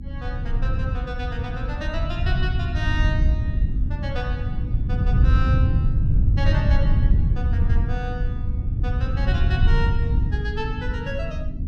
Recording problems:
mains hum; 50 Hz, harmonics up to 300 Hz, SNR 6 dB
wind noise; below 100 Hz, SNR -9 dB

